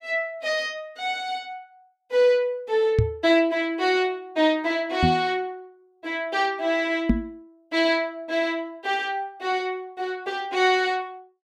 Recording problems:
microphone bump; at 3 s, at 5 s and at 7 s; peak +9 dB vs average level

